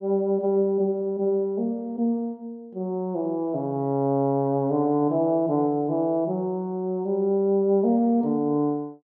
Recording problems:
none

